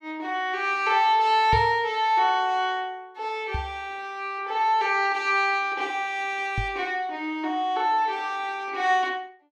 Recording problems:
knock on the microphone; at 1.5 s, at 3.5 s and at 6.5 s; peak -1 dB vs average level

